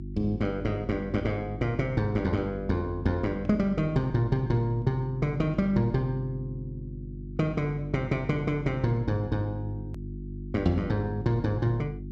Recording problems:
electrical hum; 50 Hz, harmonics up to 350 Hz, SNR 11 dB
hard cut with a click; at 10 s

